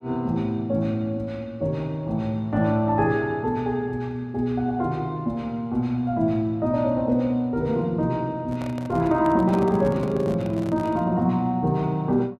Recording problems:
microphone handling noise; from 8.5 to 11 s; peak -6 dB vs average level

